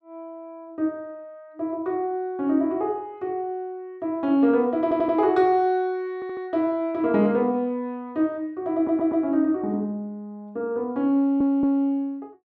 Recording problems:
audio stuttering; 4 times, first at 5 s

